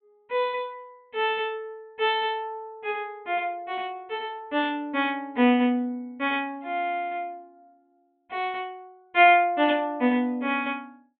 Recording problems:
treble missing; nothing above 4 kHz

